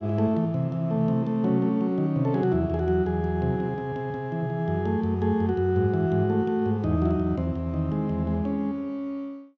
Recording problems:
none

